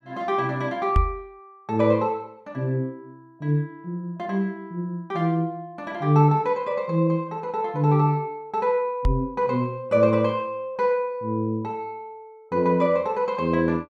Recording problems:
microphone thump; at 1 s and at 9 s; peak +6 dB vs average level

